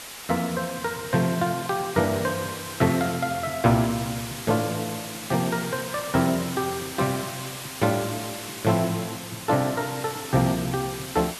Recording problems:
hiss; slope 0 dB per octave, SNR 9 dB

